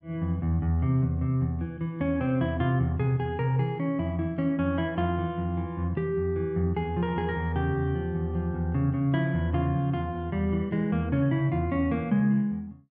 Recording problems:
none

